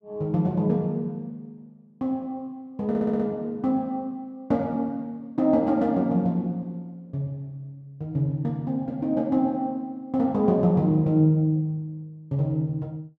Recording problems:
audio stuttering; at 3 s

